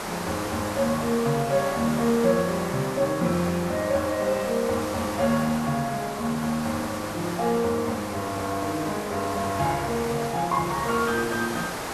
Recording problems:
hiss; SNR 7 dB

